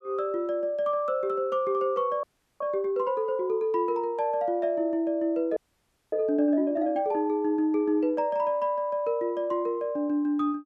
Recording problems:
audio freezing; at 2 s and at 5.5 s for 0.5 s

